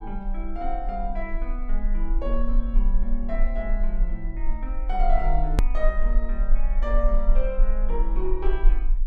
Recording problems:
low-frequency rumble; below 36 Hz, strongest tone 20 Hz, SNR -5 dB
edit click; at 5.5 s

